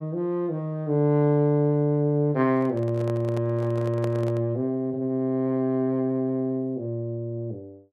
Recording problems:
microphone handling noise; from 2.5 to 4.5 s; peak -6 dB vs average level

